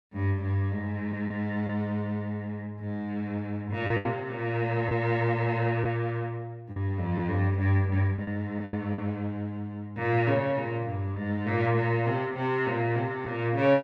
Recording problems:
packet loss; 3% of the sound replaced, filled with the last packet

